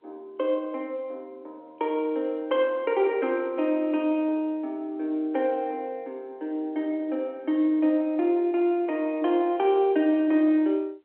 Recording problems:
phone line; 260 Hz to 3.3 kHz, G.711

